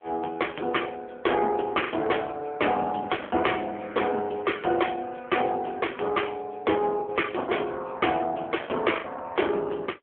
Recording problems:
phone line; 260 Hz to 3.4 kHz, AMR-NB
packet loss; 5% of the sound replaced, filled with the last packet

